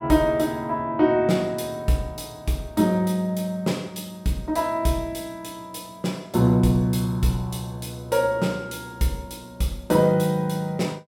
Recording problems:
none

